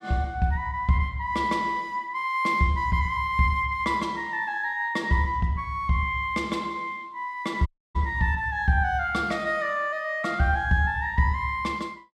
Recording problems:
dropout; at 7.5 s

